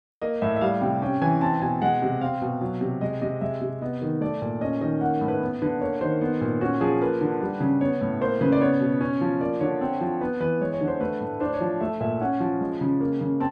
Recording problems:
none

